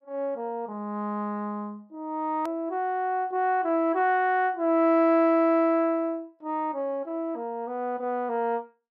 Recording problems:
edit click; at 2.5 s

